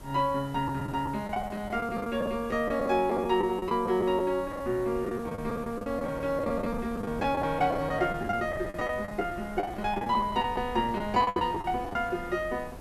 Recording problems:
background hiss; slope -1 dB per octave, SNR 27 dB
wind on the microphone; below 500 Hz, SNR 15 dB
lost packets; 13% of the sound replaced, filled with the last packet

